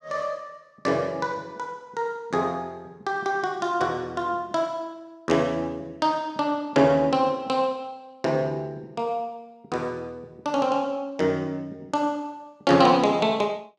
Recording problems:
none

